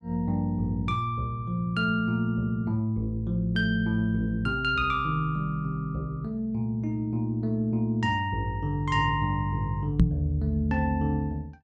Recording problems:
knock on the microphone; at 10 s; peak +9 dB vs average level

